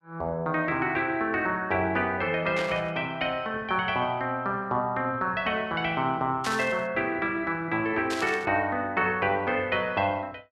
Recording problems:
static burst; at 2.5 s, at 6.5 s and at 8 s; peak -2 dB vs average level

